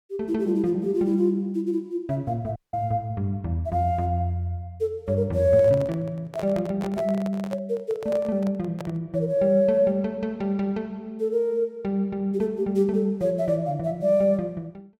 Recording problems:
audio cutting out; at 2.5 s
microphone handling noise; from 5.5 to 9 s; peak -7 dB vs average level

